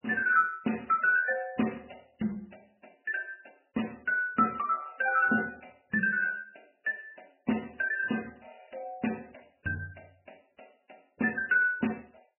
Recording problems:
codec artefacts; MP3, log-spectral distance 11 dB, nothing above 2.9 kHz

